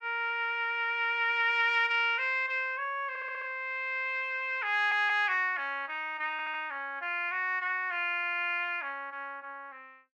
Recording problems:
stutter; at 3 s, at 4.5 s and at 6.5 s

